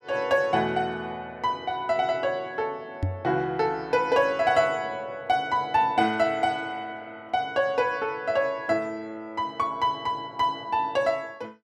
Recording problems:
knock on the microphone; at 3 s; peak +2 dB vs average level

